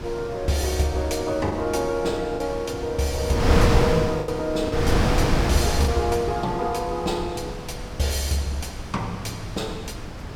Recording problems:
wind on the microphone; below 530 Hz, SNR 2 dB
packet loss; 2% of the sound replaced, filled with the last packet

